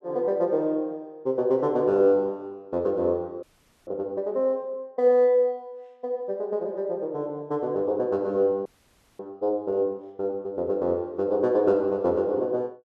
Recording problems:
audio freezing; at 3.5 s and at 8.5 s for 0.5 s

